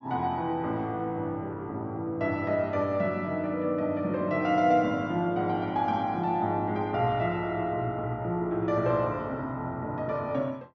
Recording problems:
treble missing; nothing above 7.3 kHz

